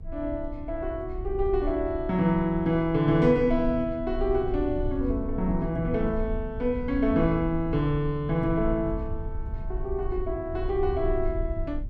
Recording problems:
low-frequency rumble; below 68 Hz, SNR 9 dB

